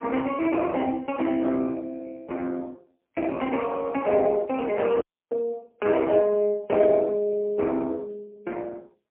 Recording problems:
telephone audio; 220 Hz to 3.3 kHz, AMR-NB, then MP3
audio cutting out; at 5 s

